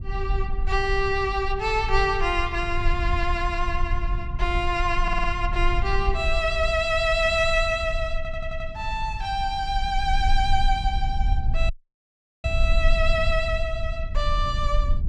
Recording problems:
low-frequency rumble; below 54 Hz, SNR 4 dB
stutter; at 5 s and at 8 s
audio cutting out; at 12 s for 1 s

